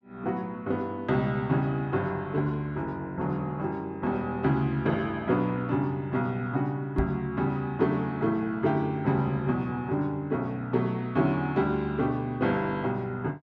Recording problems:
knock on the microphone; at 7 s; peak +2 dB vs average level

